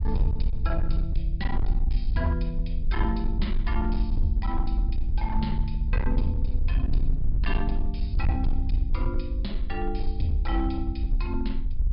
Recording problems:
low-pass filter; nothing above 5.5 kHz
distorted audio; hard clipping, uneven, signal-to-distortion ratio 10 dB
rumble; below 56 Hz, SNR -3 dB

